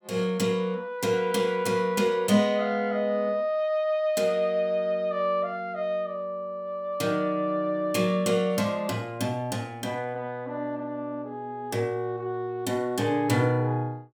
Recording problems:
none

